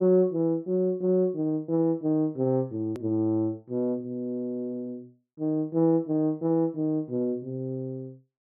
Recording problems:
edit click; at 3 s

